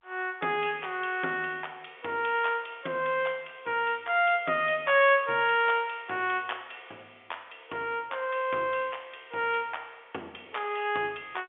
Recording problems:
phone line; 280 Hz to 3.4 kHz, G.711

